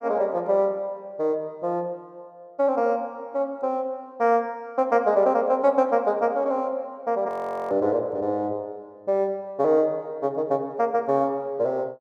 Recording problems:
frozen audio; at 7.5 s

